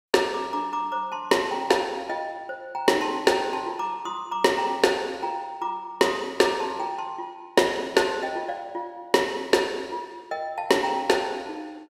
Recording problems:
none

